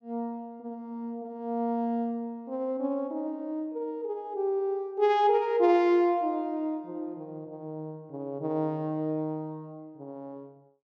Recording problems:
treble missing; nothing above 8 kHz

